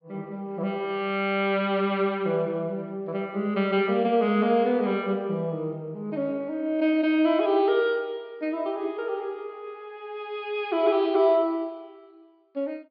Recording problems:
low-pass filter; nothing above 5 kHz

